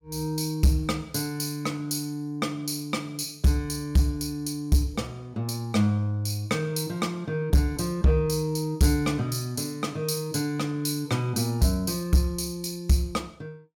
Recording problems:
distortion; hard clipping, signal-to-distortion ratio 12 dB

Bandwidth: 17 kHz